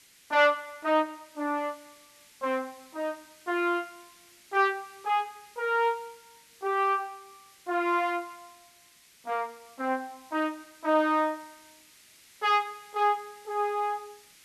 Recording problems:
hiss; SNR 25 dB

